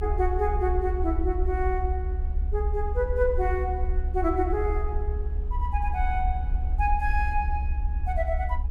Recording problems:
low-frequency rumble; below 68 Hz, SNR 0 dB

